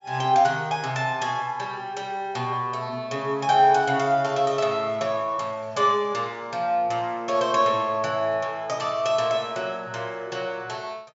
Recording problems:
low-pass filter; nothing above 8 kHz

